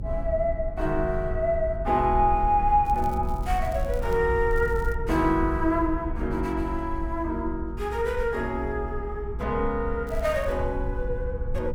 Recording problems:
low-frequency rumble; below 64 Hz, SNR 7 dB
crackle; from 3 to 4 s, at 4.5 s and at 10 s; loose cable, SNR 26 dB

